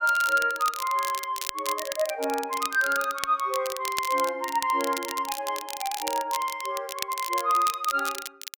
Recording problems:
crackle; vinyl, SNR 8 dB

